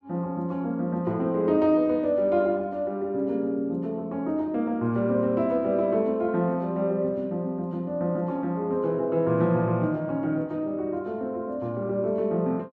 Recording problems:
none

